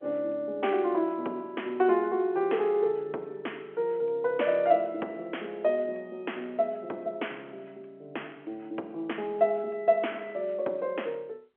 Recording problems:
phone line; 260 Hz to 3.3 kHz, G.711

